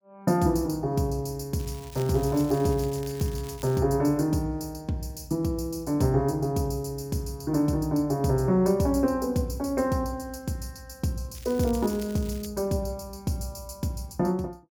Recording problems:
crackle; from 1.5 to 4 s and from 11 to 12 s; loose cable, SNR 19 dB

